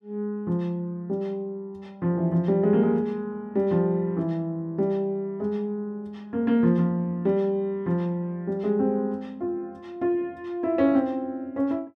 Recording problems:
none

